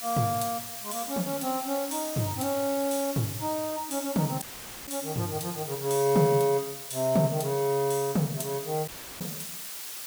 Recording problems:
hiss; slope +2 dB per octave, SNR 8 dB
audio cutting out; at 4.5 s and at 9 s

